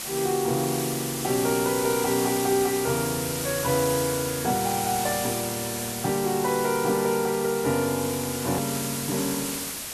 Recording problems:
hiss; slope 0 dB per octave, SNR 4 dB
edit click; at 8.5 s

